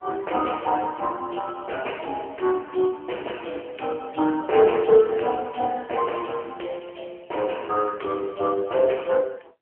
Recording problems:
telephone audio; 320 Hz to 3.2 kHz, AMR-NB

